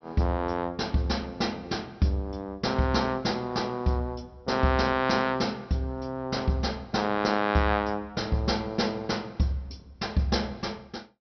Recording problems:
low-pass filter; nothing above 5.9 kHz

